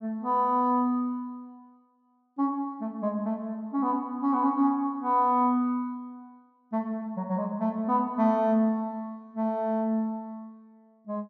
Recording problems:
none

